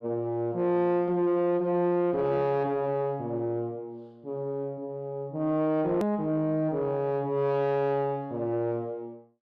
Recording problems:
distorted audio; soft clipping, signal-to-distortion ratio 11 dB
hard cut with a click; at 6 s

